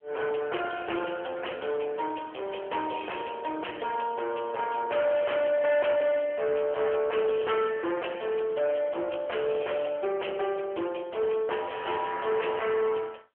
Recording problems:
telephone audio; 340 Hz to 3.2 kHz, AMR-NB
distorted audio; hard clipping, signal-to-distortion ratio 8 dB

